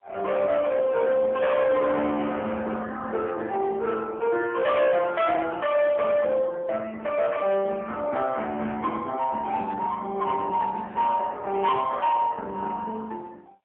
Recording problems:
phone line; 220 Hz to 3.6 kHz, AMR-NB, then MP3
distortion; hard clipping, uneven, signal-to-distortion ratio 12 dB

